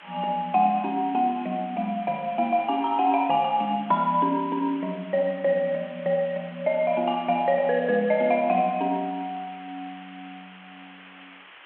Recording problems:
phone line; 260 Hz to 3.3 kHz, G.726
background hiss; SNR 21 dB

